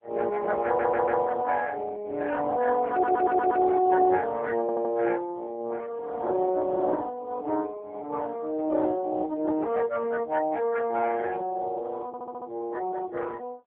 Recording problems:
telephone audio; 260 Hz to 2.1 kHz, AMR-NB
stutter; 4 times, first at 0.5 s

